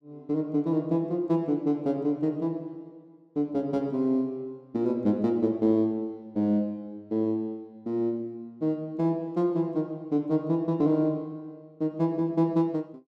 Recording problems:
none

